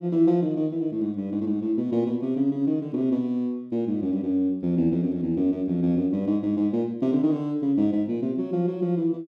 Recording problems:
none

